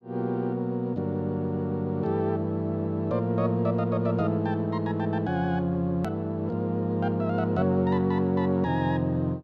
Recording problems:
click at an edit; at 6 s

